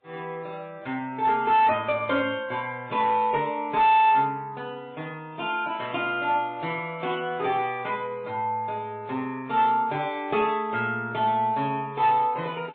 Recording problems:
treble cut off; nothing above 4 kHz
lossy codec; MP3, log-spectral distance 2 dB
distortion; hard clipping, uneven, signal-to-distortion ratio 11 dB

